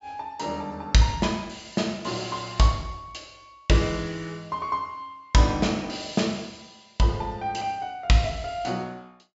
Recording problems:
low-pass filter; nothing above 8 kHz

